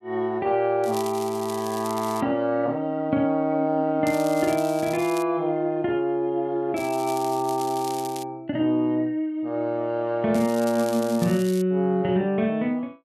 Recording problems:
crackle; 4 times, first at 1 s; loose cable, SNR 15 dB

